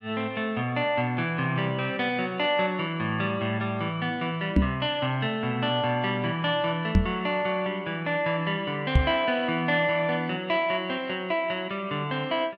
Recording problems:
microphone thump; at 4.5 s, at 7 s and at 9 s; peak +9 dB vs average level

